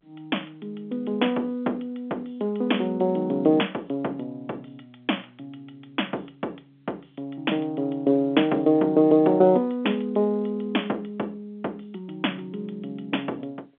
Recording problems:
phone line; 220 Hz to 3.5 kHz, G.711

